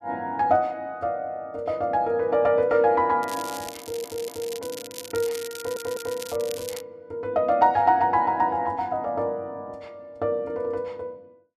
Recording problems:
crackling; from 3 to 7 s; loose cable, SNR 14 dB
stutter; at 4 s and at 5.5 s

